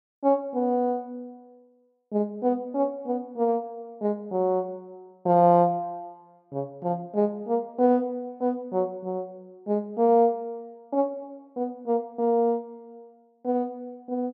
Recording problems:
none

